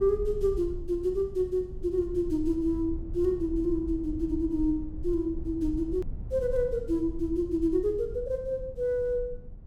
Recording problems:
low-frequency rumble; below 72 Hz, SNR 11 dB
click at an edit; at 6 s

